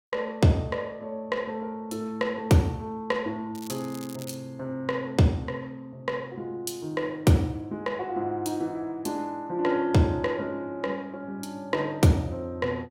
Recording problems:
crackle; at 3.5 s; loose cable, SNR 17 dB

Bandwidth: 16.5 kHz